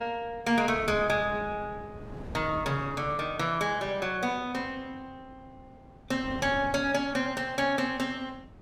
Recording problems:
wind on the microphone; below 360 Hz, SNR 17 dB

